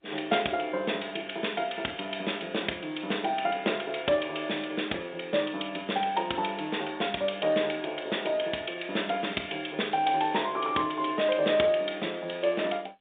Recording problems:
phone line; 240 Hz to 3.7 kHz, G.711

